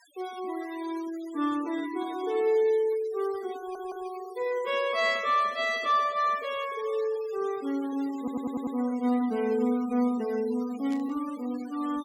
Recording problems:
noise reduction artefacts; signal-to-artefact ratio 19 dB
stutter; at 3.5 s and at 8 s
static burst; at 11 s; peak -15 dB vs average level

